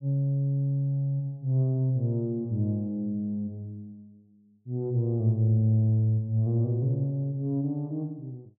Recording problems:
none

